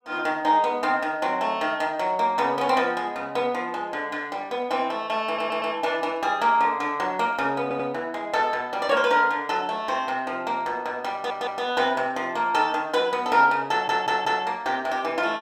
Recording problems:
stutter; 4 times, first at 5.5 s

